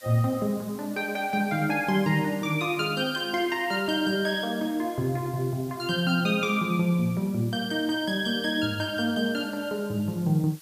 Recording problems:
background hiss; slope +3 dB per octave, SNR 21 dB

